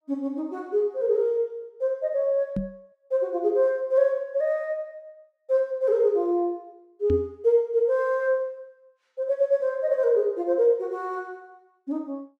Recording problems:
microphone bump; at 2.5 s and at 7 s; peak +1 dB vs average level

